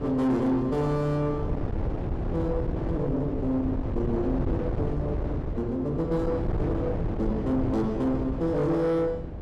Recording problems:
distortion; soft clipping, signal-to-distortion ratio 11 dB
wind on the microphone; below 330 Hz, SNR 4 dB

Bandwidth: 13 kHz